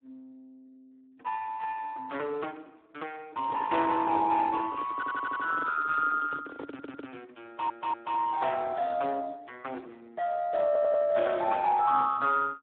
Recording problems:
phone line; 240 Hz to 3.9 kHz, Speex
microphone handling noise; from 3.5 to 7 s; peak -6 dB vs average level
stutter; 4 times, first at 5 s

